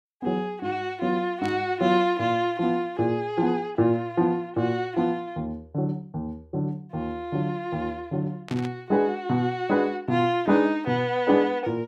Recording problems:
burst of static; at 1.5 s and at 8.5 s; peak -9 dB vs average level

